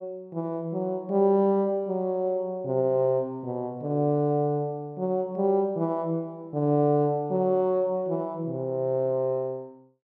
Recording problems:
none

